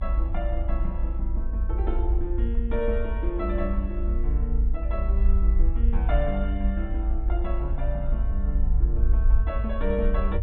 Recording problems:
low-pass filter; nothing above 3.9 kHz
rumble; below 54 Hz, strongest tone 26 Hz, SNR -6 dB

